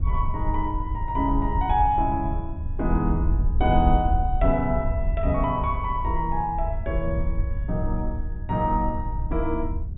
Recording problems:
treble missing; nothing above 4 kHz
wind on the microphone; below 76 Hz, SNR 2 dB

